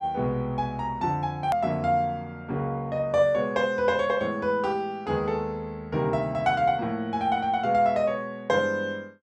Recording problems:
hard cut with a click; at 1.5 s

